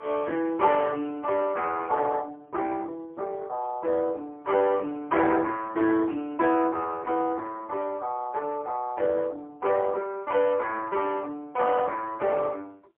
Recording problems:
telephone audio; 300 Hz to 2.7 kHz, AMR-NB, then MP3

